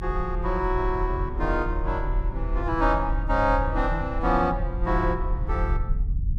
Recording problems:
low-frequency rumble; below 60 Hz, strongest tone 36 Hz, SNR 3 dB

